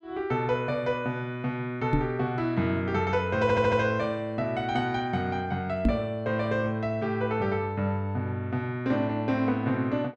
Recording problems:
microphone bump; at 2 s and at 6 s; peak +7 dB vs average level
audio stuttering; at 3.5 s

